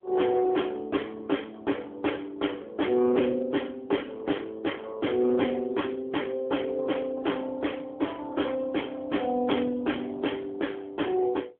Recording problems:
telephone audio; 220 Hz to 3.4 kHz, AMR-NB
distortion; hard clipping, signal-to-distortion ratio 10 dB

